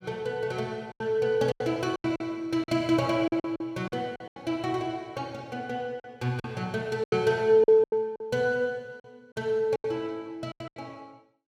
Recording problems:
packet loss; 11% of the sound replaced, filled with silence

